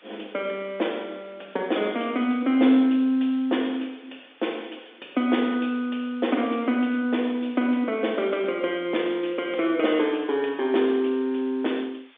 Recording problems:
telephone audio; 240 Hz to 3.6 kHz, G.711
hiss; SNR 30 dB

